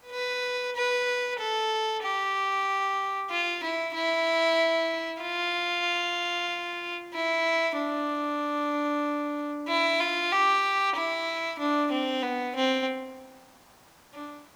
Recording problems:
hiss; SNR 30 dB

